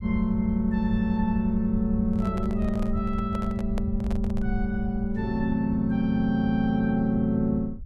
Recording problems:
rumble; below 74 Hz, SNR 10 dB
microphone handling noise; from 2 to 4.5 s; peak -7 dB vs average level

